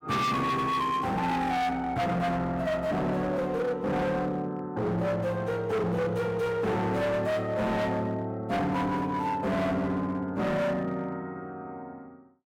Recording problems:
distortion; hard clipping, signal-to-distortion ratio 7 dB

